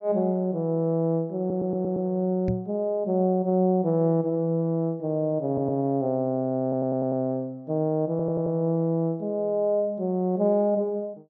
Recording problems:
treble missing; nothing above 8 kHz
stutter; 4 times, first at 1.5 s
microphone bump; at 2.5 s; peak +2 dB vs average level

